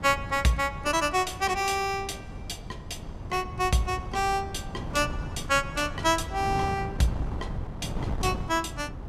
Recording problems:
wind noise; below 230 Hz, SNR 9 dB

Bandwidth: 14.5 kHz